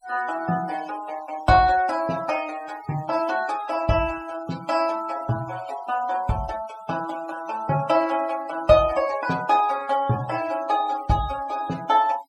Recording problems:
noise reduction artefacts; signal-to-artefact ratio 18 dB

